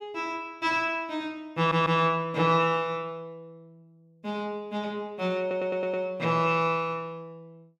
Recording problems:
audio stuttering; at 1.5 s and at 5.5 s

